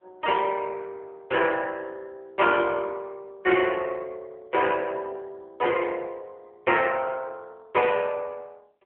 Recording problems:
phone line; 320 Hz to 3.5 kHz, AMR-NB

